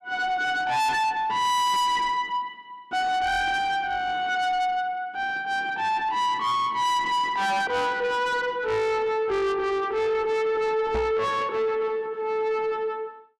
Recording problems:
distorted audio; soft clipping, signal-to-distortion ratio 6 dB
knock on the microphone; at 11 s; peak -1 dB vs average level

